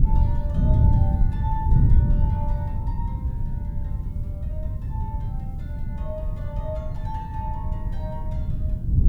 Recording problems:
background hiss; slope -3 dB per octave, SNR 27 dB
wind noise; below 110 Hz, SNR -13 dB

